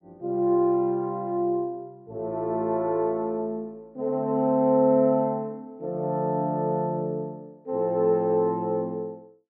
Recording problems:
none

